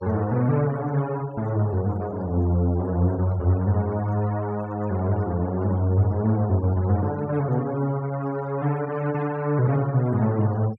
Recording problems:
noise reduction artefacts; signal-to-artefact ratio 22 dB

